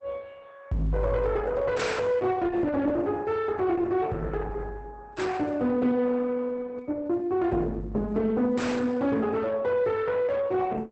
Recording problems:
lossy compression; Opus, log-spectral distance 3 dB, nothing above 8.2 kHz
distortion; soft clipping, signal-to-distortion ratio 11 dB

